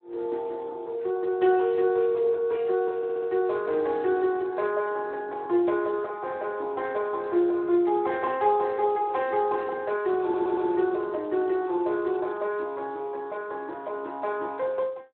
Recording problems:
telephone audio; 300 Hz to 2.6 kHz, Speex
audio stuttering; at 3 s and at 10 s

